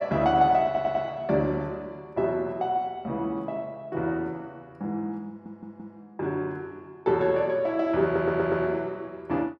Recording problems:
audio stuttering; at 0.5 s, at 5.5 s and at 8 s

